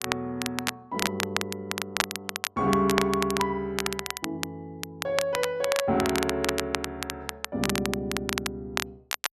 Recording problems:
crackling; vinyl, SNR 2 dB

